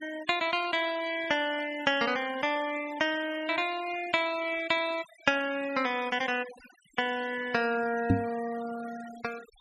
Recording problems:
noise reduction artefacts; signal-to-artefact ratio 17 dB
microphone thump; at 8 s; peak +8 dB vs average level

